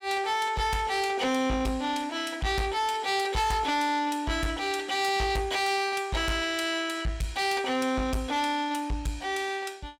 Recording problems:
distorted audio; soft clipping, signal-to-distortion ratio 10 dB

